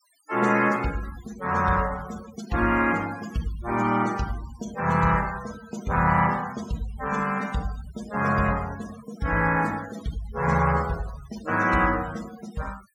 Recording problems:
denoising artefacts; signal-to-artefact ratio 17 dB

